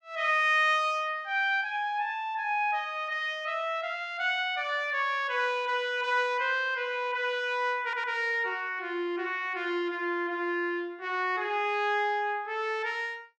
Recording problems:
audio stuttering; at 8 s

